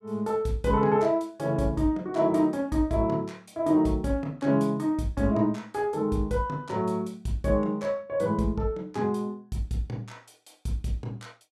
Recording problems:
none

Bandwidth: 14.5 kHz